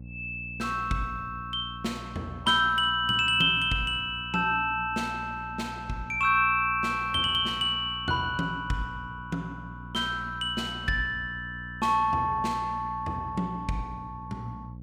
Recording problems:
hum; 60 Hz, harmonics up to 540 Hz, SNR 16 dB

